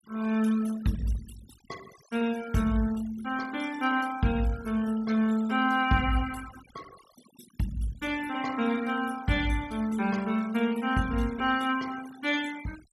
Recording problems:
denoising artefacts; signal-to-artefact ratio 19 dB

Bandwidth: 14.5 kHz